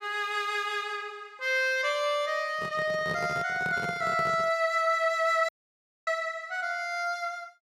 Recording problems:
handling noise; from 2.5 to 4.5 s; peak -5 dB vs average level
dropout; at 5.5 s for 0.5 s

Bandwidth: 14.5 kHz